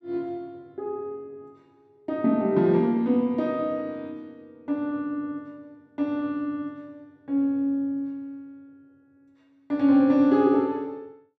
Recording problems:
none

